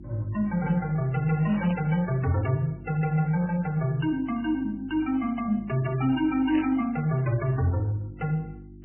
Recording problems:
lossy compression; MP3, log-spectral distance 2 dB, nothing above 2.8 kHz
electrical hum; 50 Hz, harmonics up to 350 Hz, SNR 19 dB
static burst; at 1.5 s, at 3.5 s and at 6.5 s; peak -6 dB vs average level

